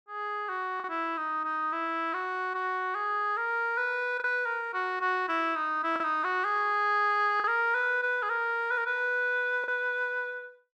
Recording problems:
packet loss; 1.9% of the sound replaced, filled with the last packet

